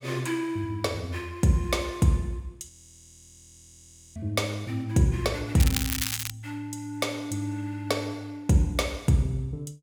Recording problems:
frozen audio; at 2.5 s for 1.5 s
crackle; at 5.5 s; loose cable, SNR 2 dB

